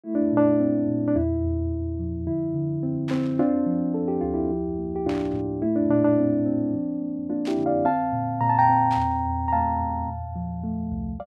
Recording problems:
burst of static; 4 times, first at 3 s; peak -10 dB vs average level

